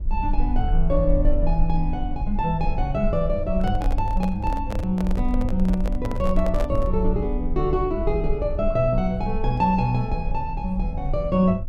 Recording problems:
low-frequency rumble; below 48 Hz, SNR 4 dB
microphone handling noise; from 3.5 to 7 s; peak -2 dB vs average level

